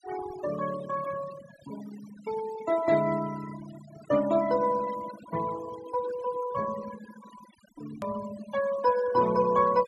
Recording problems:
denoising artefacts; signal-to-artefact ratio 15 dB
hard cut with a click; at 8 s

